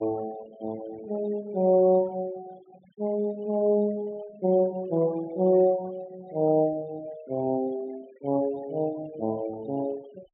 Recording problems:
low-pass filter; nothing above 4 kHz
denoising artefacts; signal-to-artefact ratio 23 dB

